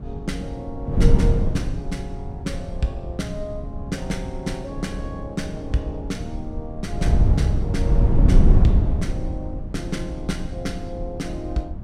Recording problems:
wind on the microphone; below 110 Hz, SNR -6 dB

